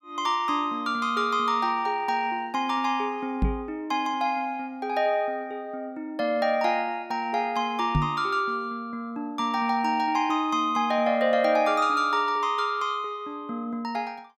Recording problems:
microphone bump; at 3.5 s and at 8 s; peak +5 dB vs average level

